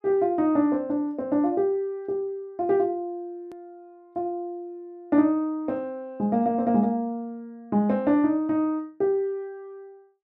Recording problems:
hard cut with a click; at 3.5 s

